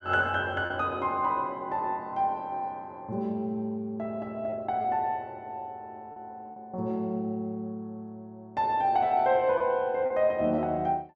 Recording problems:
packet loss; 2% of the sound replaced, filled with repeated pitch periods

